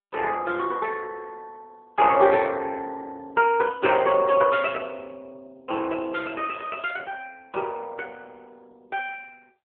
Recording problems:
phone line; 300 Hz to 3.5 kHz, AMR-NB

